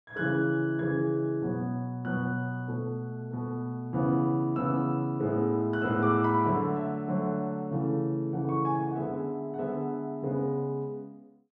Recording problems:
none

